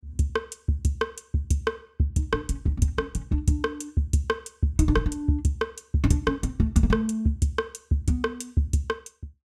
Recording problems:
none

